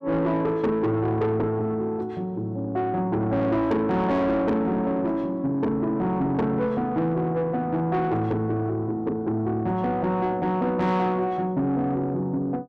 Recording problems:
distortion; soft clipping, signal-to-distortion ratio 11 dB

